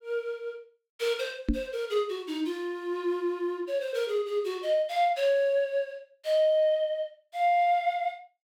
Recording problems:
microphone thump; at 1.5 s; peak +5 dB vs average level

